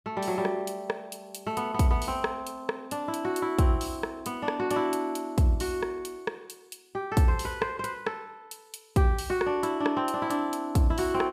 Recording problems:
none

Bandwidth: 15 kHz